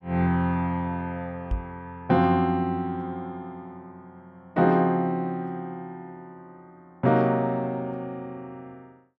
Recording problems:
microphone bump; at 1.5 s; peak 0 dB vs average level

